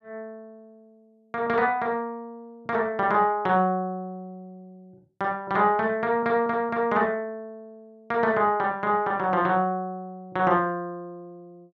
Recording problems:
none

